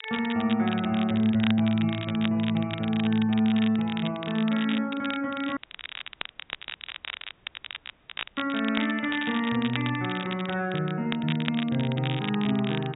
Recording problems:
low-pass filter; nothing above 4 kHz
crackle; vinyl, SNR 10 dB
audio cutting out; at 5.5 s for 3 s

